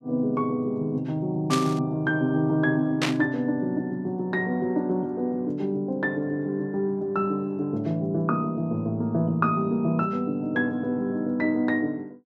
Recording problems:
burst of static; at 1.5 s and at 3 s; peak +4 dB vs average level

